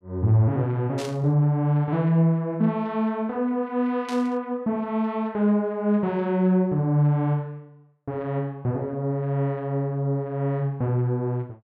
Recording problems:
static burst; at 1 s and at 4 s; peak -8 dB vs average level

